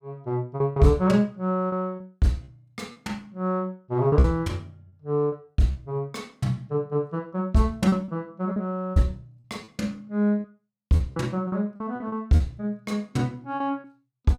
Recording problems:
lost packets; 8% of the sound replaced, filled with repeated pitch periods

